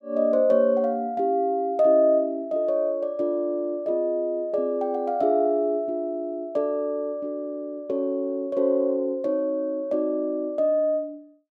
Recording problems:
none

